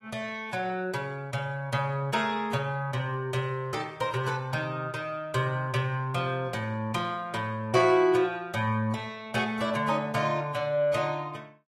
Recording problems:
codec artefacts; AAC, log-spectral distance 2 dB

